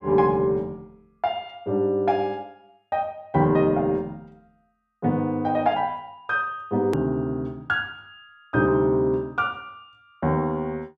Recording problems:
click at an edit; at 7 s

